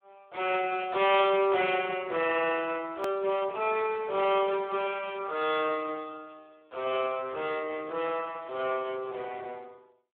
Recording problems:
phone line; 320 Hz to 3.5 kHz, Speex
distorted audio; soft clipping, signal-to-distortion ratio 15 dB
edit click; at 3 s

